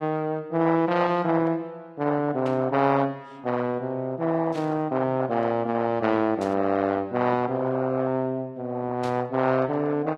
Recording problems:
lossy compression; AAC, log-spectral distance 2 dB
burst of static; 4 times, first at 2.5 s; peak -12 dB vs average level

